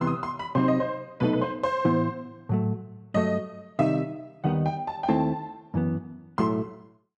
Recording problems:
none

